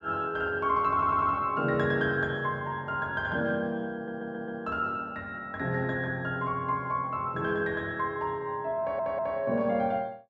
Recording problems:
audio stuttering; at 1 s, at 4 s and at 9 s

